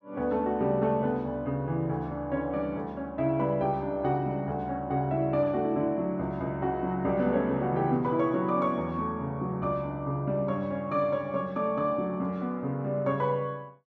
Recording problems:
none

